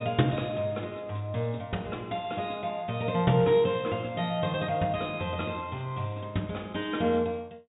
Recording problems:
low-pass filter; nothing above 4 kHz

